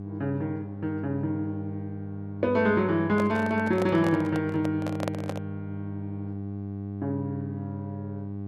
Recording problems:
hum; 50 Hz, harmonics up to 800 Hz, SNR 8 dB
microphone handling noise; from 3 to 5.5 s; peak 0 dB vs average level

